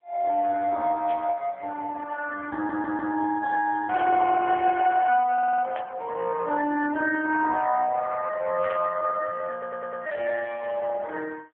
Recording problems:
telephone audio; 370 Hz to 3.3 kHz, AMR-NB
burst of static; 4 times, first at 1 s; peak -5 dB vs average level
audio stuttering; at 2.5 s, at 5.5 s and at 9.5 s

